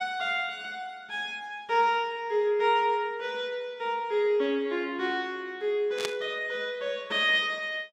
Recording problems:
static burst; at 6 s; peak +1 dB vs average level

